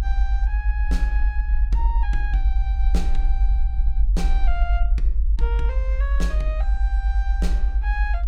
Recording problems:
rumble; below 54 Hz, SNR -11 dB

